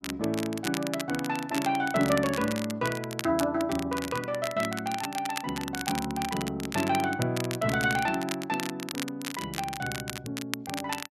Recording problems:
crackle; vinyl, SNR 8 dB

